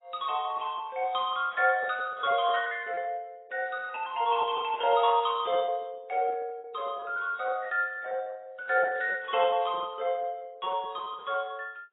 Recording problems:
lossy compression; AAC, log-spectral distance 2 dB, nothing above 3.2 kHz
lost packets; 13% of the sound replaced, filled with repeated pitch periods

